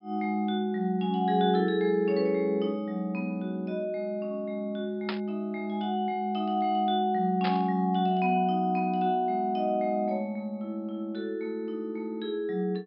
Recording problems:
low-pass filter; nothing above 5.5 kHz
burst of static; at 5 s and at 7.5 s; peak -1 dB vs average level

